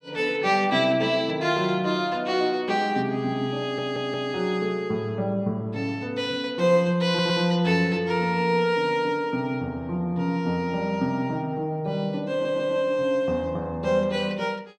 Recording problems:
stutter; at 3.5 s, at 7 s and at 12 s

